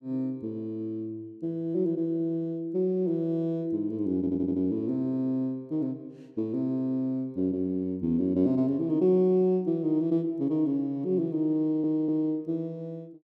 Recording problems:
stutter; at 4 s and at 12 s

